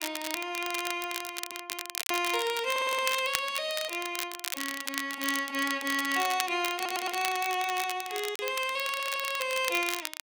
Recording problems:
crackling; vinyl, SNR 6 dB
lost packets; 1.4% of the sound replaced, filled with silence
audio stuttering; 4 times, first at 1.5 s

